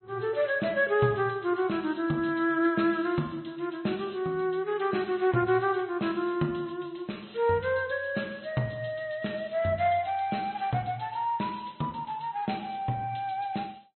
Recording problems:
low-pass filter; nothing above 4.1 kHz
lossy codec; MP3, log-spectral distance 5 dB

